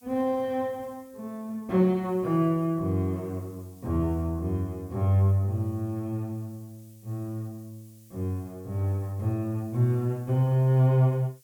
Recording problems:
hiss; slope +3 dB per octave, SNR 30 dB

